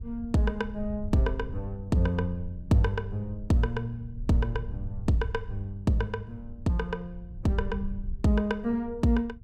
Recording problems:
rumble; below 76 Hz, SNR 12 dB

